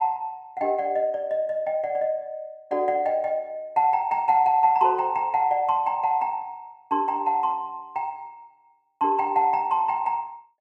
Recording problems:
none

